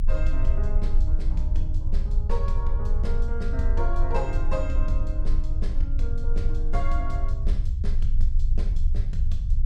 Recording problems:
rumble; below 48 Hz, strongest tone 22 Hz, SNR -8 dB

